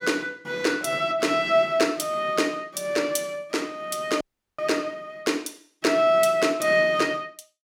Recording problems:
dropout; at 4 s

